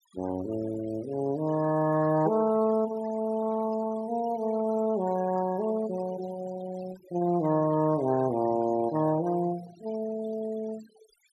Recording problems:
denoising artefacts; signal-to-artefact ratio 19 dB

